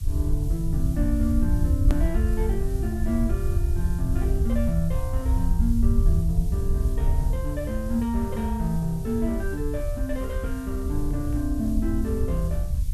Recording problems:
hiss; SNR 19 dB
rumble; below 78 Hz, SNR -2 dB
click at an edit; at 2 s

